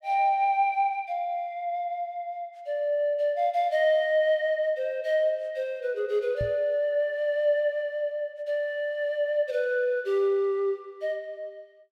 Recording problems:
knock on the microphone; at 6.5 s; peak -3 dB vs average level

